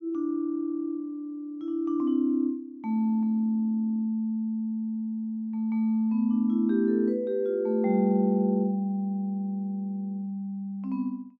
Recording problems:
none

